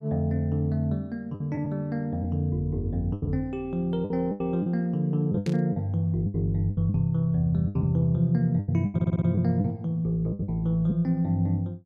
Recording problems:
lost packets; 9% of the sound replaced, filled with the last packet
static burst; at 5.5 s; peak -10 dB vs average level
audio stuttering; at 9 s

